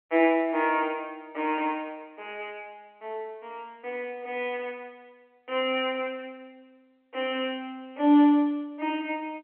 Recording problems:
phone line; 260 Hz to 3.6 kHz, G.711

